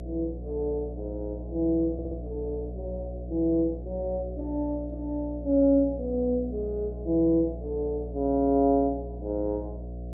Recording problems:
hum; 60 Hz, harmonics up to 720 Hz, SNR 10 dB
audio stuttering; at 2 s

